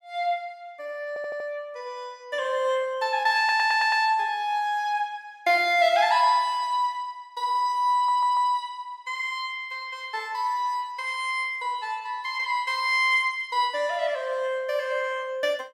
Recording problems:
stutter; at 1 s, at 3.5 s and at 8 s

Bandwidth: 16.5 kHz